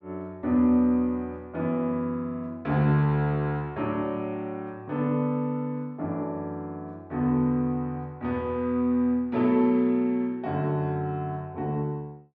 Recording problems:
none

